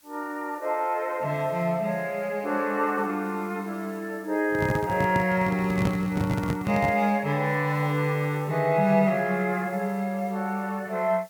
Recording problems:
background hiss; slope +1 dB per octave, SNR 26 dB
handling noise; from 4.5 to 7 s; peak +2 dB vs average level

